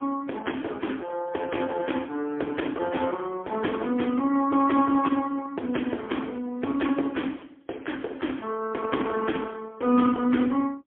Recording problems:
telephone audio; 220 Hz to 3.4 kHz, AMR-NB, then MP3

